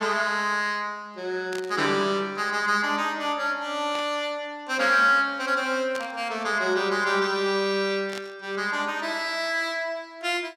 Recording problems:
static burst; 4 times, first at 1.5 s; peak -8 dB vs average level

